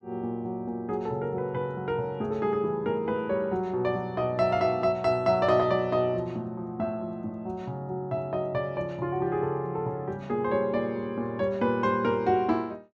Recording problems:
none

